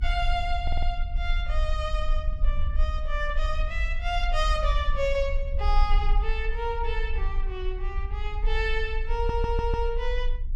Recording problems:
rumble; below 46 Hz, strongest tone 24 Hz, SNR -1 dB
stutter; at 0.5 s and at 9 s

